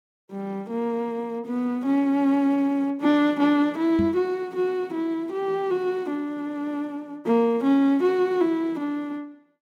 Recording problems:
microphone bump; at 4 s; peak 0 dB vs average level

